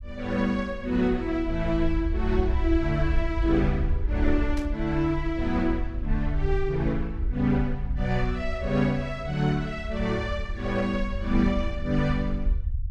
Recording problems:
low-frequency rumble; below 64 Hz, SNR 5 dB
static burst; at 4.5 s; peak -10 dB vs average level

